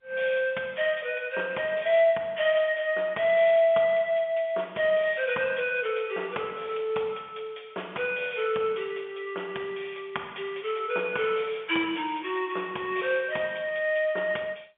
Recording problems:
phone line; 280 Hz to 3.4 kHz, G.711

